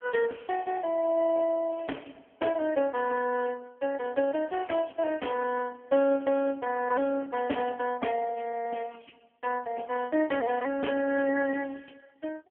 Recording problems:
phone line; 240 Hz to 2.8 kHz, AMR-NB

